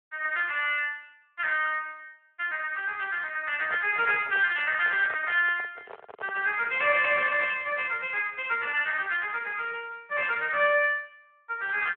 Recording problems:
telephone audio; 340 Hz to 3.3 kHz, Speex
handling noise; from 3.5 to 7 s; peak -10 dB vs average level

